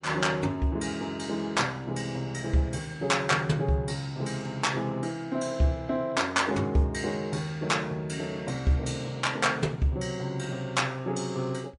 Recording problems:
lossy codec; MP3, log-spectral distance 2 dB, nothing above 10.7 kHz

